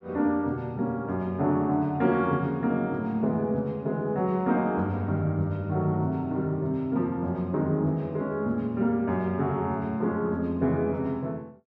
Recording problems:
none

